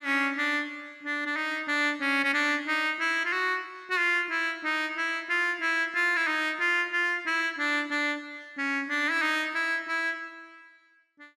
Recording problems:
none

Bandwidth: 14.5 kHz